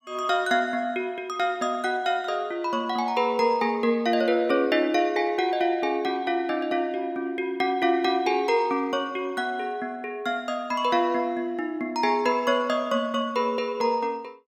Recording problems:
none

